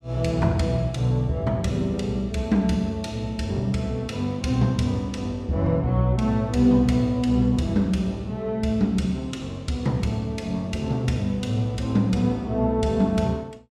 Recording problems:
none

